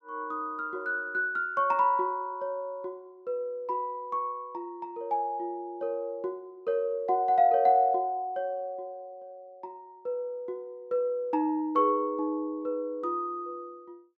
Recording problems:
none

